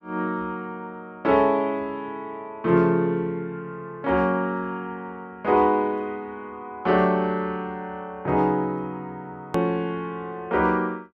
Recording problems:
click at an edit; at 9.5 s

